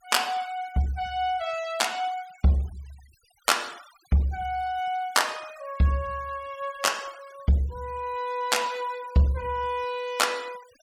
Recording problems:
denoising artefacts; signal-to-artefact ratio 22 dB

